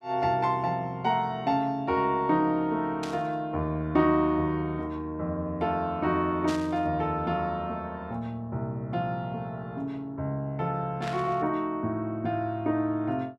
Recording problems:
static burst; at 3 s, at 6.5 s and at 11 s; peak -6 dB vs average level

